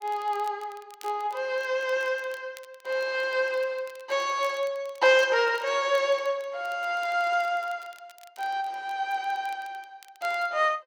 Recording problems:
crackling; vinyl, SNR 26 dB

